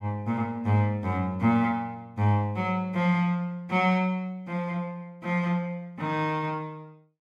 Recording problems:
none

